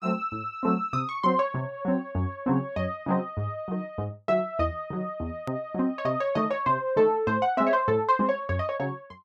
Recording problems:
click at an edit; at 5.5 s

